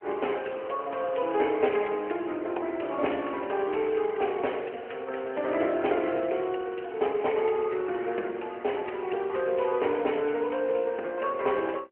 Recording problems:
phone line; 280 Hz to 3.2 kHz, AMR-NB

